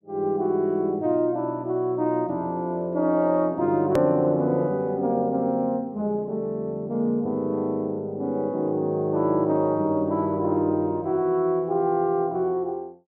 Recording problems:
edit click; at 4 s

